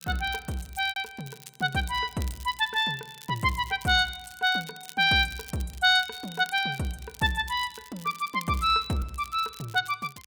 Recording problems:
crackle; vinyl, SNR 20 dB
lost packets; 1% of the sound replaced, filled with repeated pitch periods

